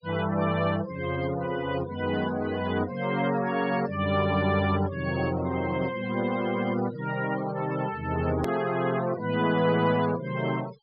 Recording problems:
low-pass filter; nothing above 5.5 kHz
noise reduction artefacts; signal-to-artefact ratio 15 dB
click at an edit; at 8.5 s

